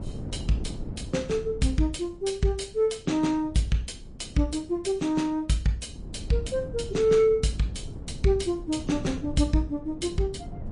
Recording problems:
lossy compression; MP3, log-spectral distance 2 dB, nothing above 10.4 kHz
wind on the microphone; below 210 Hz, SNR 13 dB

